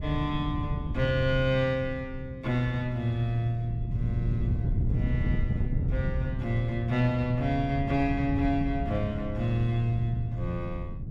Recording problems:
wind on the microphone; below 140 Hz, SNR 4 dB

